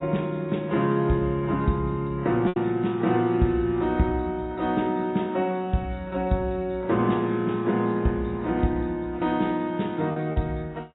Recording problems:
codec artefacts; AAC, log-spectral distance 2 dB, nothing above 3.8 kHz
packet loss; 1.5% of the sound replaced, filled with repeated pitch periods

